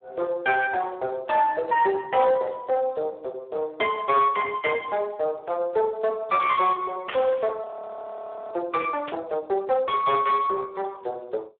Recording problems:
telephone audio; 340 Hz to 3.3 kHz, Speex
distortion; soft clipping, signal-to-distortion ratio 12 dB
burst of static; at 7 s and at 9 s; peak -4 dB vs average level
audio freezing; at 7.5 s for 1 s

